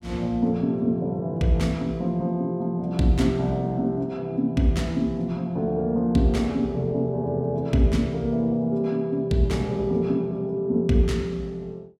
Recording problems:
none

